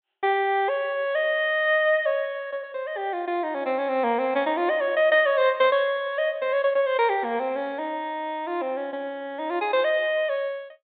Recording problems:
low-pass filter; nothing above 4 kHz

